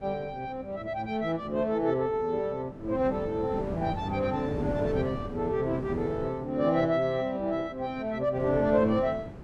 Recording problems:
wind noise; below 370 Hz, SNR 11 dB

